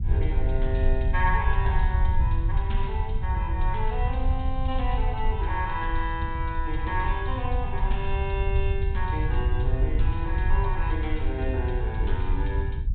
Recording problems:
treble missing; nothing above 4 kHz
low-frequency rumble; below 74 Hz, SNR -3 dB

